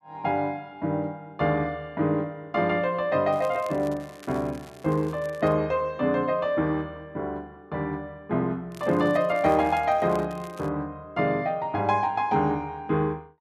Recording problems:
crackle; from 3.5 to 5.5 s and from 8.5 to 11 s; loose cable, SNR 24 dB

